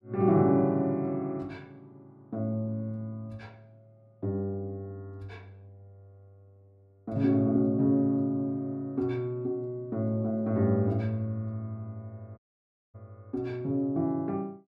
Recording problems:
dropout; at 12 s for 0.5 s

